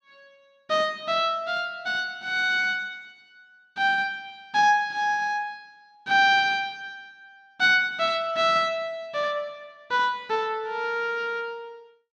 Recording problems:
none

